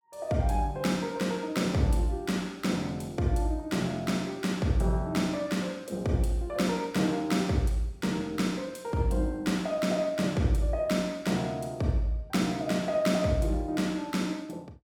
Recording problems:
none

